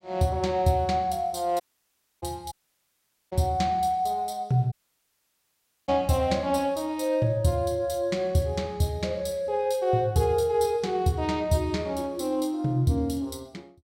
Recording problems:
audio cutting out; at 1.5 s for 0.5 s, at 2.5 s for 1 s and at 4.5 s for 1 s

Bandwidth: 16 kHz